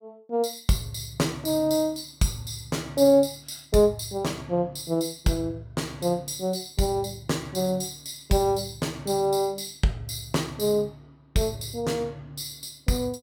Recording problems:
none

